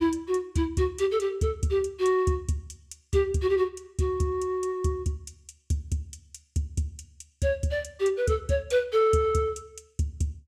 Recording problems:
none

